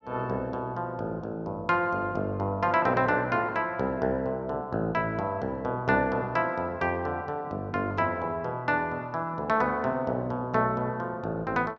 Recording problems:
none

